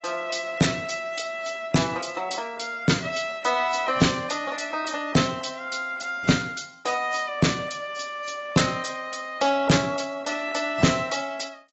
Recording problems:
lossy compression; AAC, log-spectral distance 5 dB, nothing above 7.6 kHz
distortion; soft clipping, signal-to-distortion ratio 11 dB

